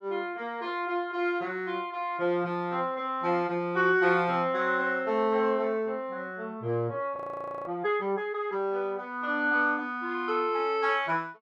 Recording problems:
audio freezing; at 7 s for 0.5 s

